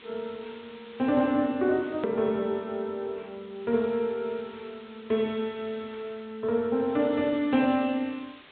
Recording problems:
low-pass filter; nothing above 4 kHz
hiss; SNR 23 dB
click at an edit; at 2 s

